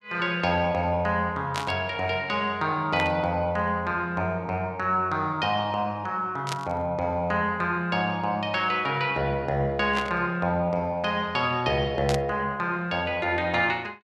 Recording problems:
burst of static; 5 times, first at 1.5 s; peak -1 dB vs average level

